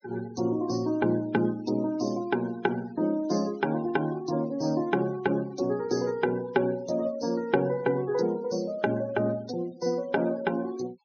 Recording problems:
low-pass filter; nothing above 6.4 kHz
denoising artefacts; signal-to-artefact ratio 22 dB

